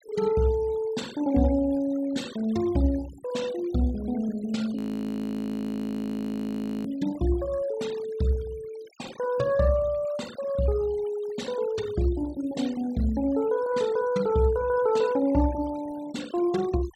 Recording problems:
denoising artefacts; signal-to-artefact ratio 20 dB
frozen audio; at 5 s for 2 s

